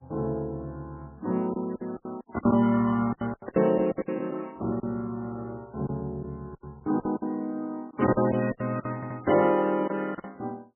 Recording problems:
lossy codec; MP3, log-spectral distance 2 dB, nothing above 2.7 kHz
packet loss; 12% of the sound replaced, filled with silence
audio stuttering; at 9 s

